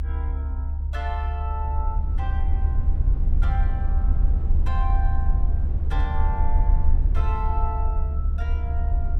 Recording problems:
rumble; below 72 Hz, SNR -11 dB
burst of static; at 6 s; peak -13 dB vs average level

